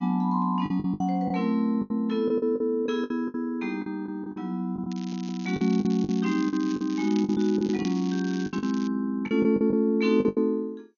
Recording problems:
codec artefacts; MP2, log-spectral distance 2 dB, nothing above 6.3 kHz
lost packets; 13% of the sound replaced, filled with the last packet
crackling; from 5 to 9 s; loose cable, SNR 19 dB
stutter; at 5 s

